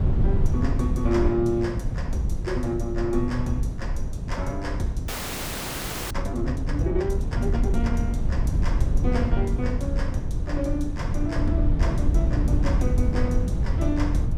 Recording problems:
wind noise; below 100 Hz, SNR -3 dB
audio freezing; at 5 s for 1 s

